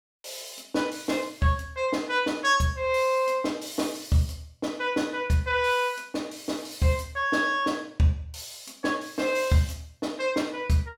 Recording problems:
none

